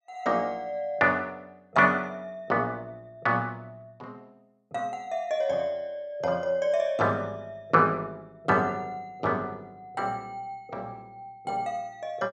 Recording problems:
none

